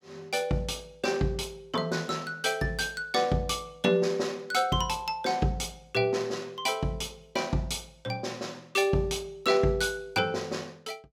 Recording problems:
none

